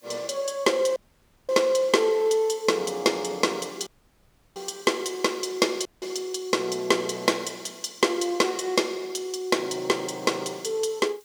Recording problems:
background hiss; SNR 29 dB
audio cutting out; at 1 s for 0.5 s, at 4 s for 0.5 s and at 6 s

